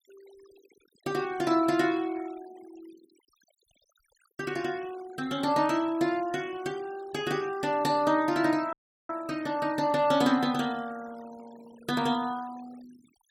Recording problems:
noise reduction artefacts; signal-to-artefact ratio 22 dB
dropout; at 8.5 s

